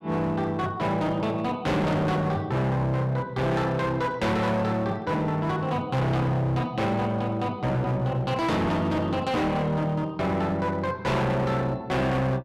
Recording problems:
distortion; hard clipping, uneven, signal-to-distortion ratio 7 dB

